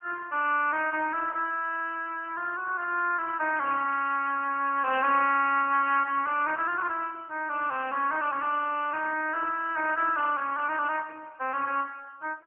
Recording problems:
telephone audio; 340 Hz to 3 kHz, AMR-NB, then MP3

